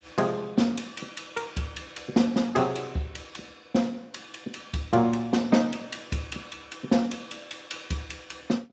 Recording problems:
lossy codec; Speex, log-spectral distance 5 dB, nothing above 7.6 kHz

